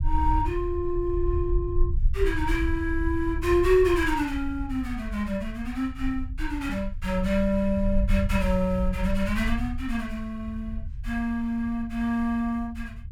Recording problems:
low-frequency rumble; below 66 Hz, SNR 6 dB

